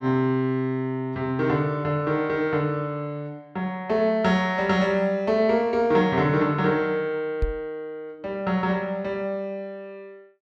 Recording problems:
microphone bump; at 7.5 s; peak +1 dB vs average level

